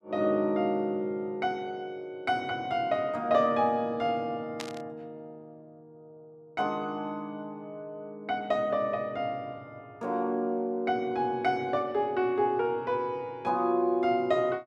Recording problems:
burst of static; at 4.5 s; peak -4 dB vs average level

